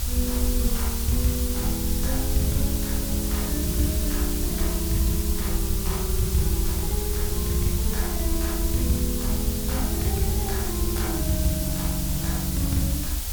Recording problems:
background hiss; slope +1 dB per octave, SNR 1 dB
low-frequency rumble; below 70 Hz, SNR 1 dB

